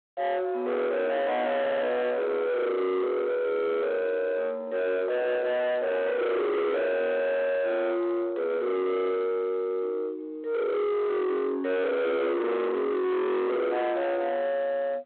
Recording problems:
phone line; 990 Hz to 3.5 kHz, G.726
distortion; soft clipping, signal-to-distortion ratio 7 dB
audio stuttering; at 1.5 s

